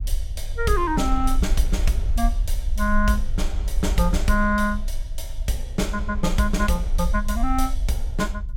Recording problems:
low-frequency rumble; below 50 Hz, strongest tone 22 Hz, SNR 3 dB

